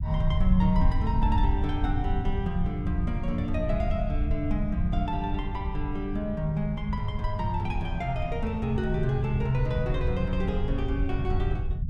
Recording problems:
low-frequency rumble; below 88 Hz, SNR 1 dB

